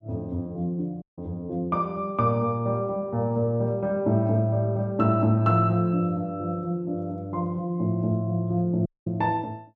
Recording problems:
audio cutting out; at 1 s and at 9 s

